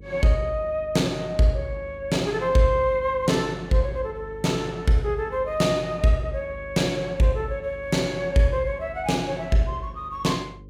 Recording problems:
electrical hum; 50 Hz, harmonics up to 550 Hz, SNR 20 dB

